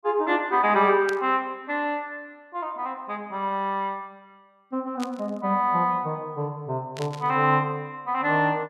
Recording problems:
burst of static; at 1 s, at 5 s and at 7 s; peak -6 dB vs average level

